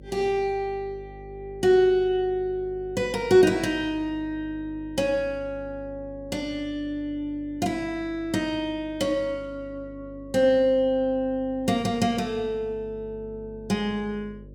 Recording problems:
hum; 50 Hz, harmonics up to 600 Hz, SNR 20 dB

